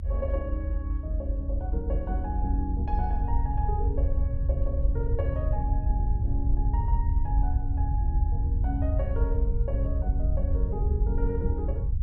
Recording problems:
rumble; below 74 Hz, SNR -8 dB

